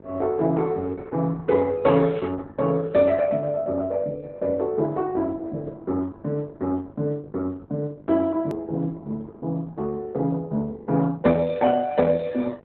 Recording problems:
lossy codec; Opus, log-spectral distance 2 dB, nothing above 3.6 kHz
mains hum; 50 Hz, harmonics up to 1.1 kHz, SNR 25 dB
edit click; at 8.5 s

